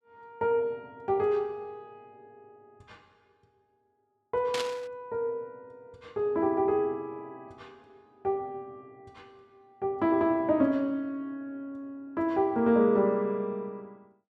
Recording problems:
static burst; at 4.5 s; peak -1 dB vs average level

